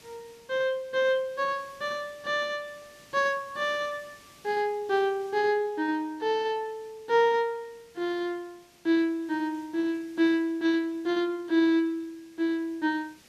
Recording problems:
hiss; SNR 27 dB

